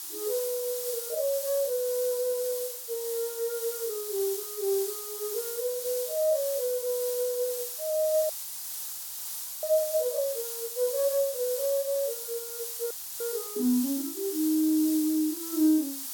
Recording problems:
hiss; SNR 5 dB
audio cutting out; at 8.5 s for 1.5 s and at 13 s

